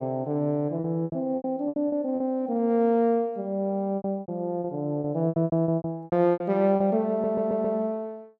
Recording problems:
packet loss; 14% of the sound replaced, filled with repeated pitch periods
audio stuttering; at 7 s

